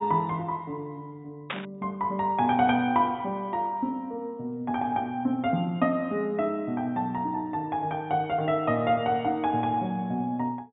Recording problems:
treble missing; nothing above 4 kHz
burst of static; at 1.5 s; peak 0 dB vs average level

